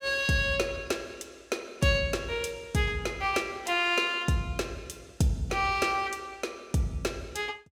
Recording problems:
none

